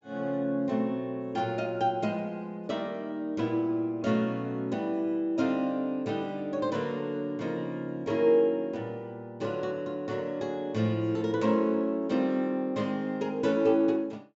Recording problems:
treble missing; nothing above 8 kHz

